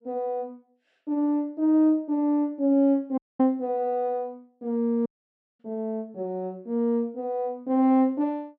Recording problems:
dropout; at 3 s and at 5 s for 0.5 s

